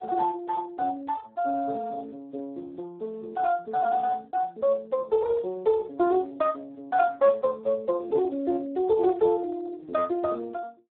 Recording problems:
phone line; 240 Hz to 2.2 kHz, Speex

